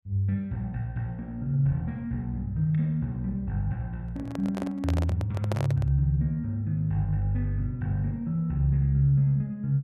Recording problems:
microphone handling noise; from 4 to 6 s; peak -1 dB vs average level

